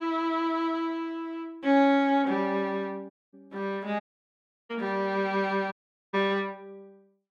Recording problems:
dropout; at 3 s, at 4 s for 0.5 s and at 5.5 s

